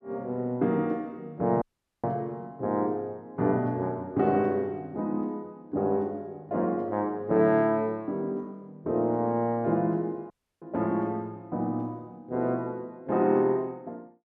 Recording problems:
audio cutting out; at 1.5 s and at 10 s

